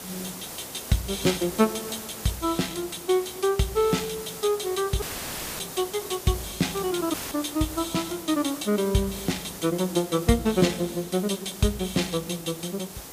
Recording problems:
hiss; SNR 11 dB
audio cutting out; at 5 s for 0.5 s and at 7 s; filled with static

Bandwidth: 15 kHz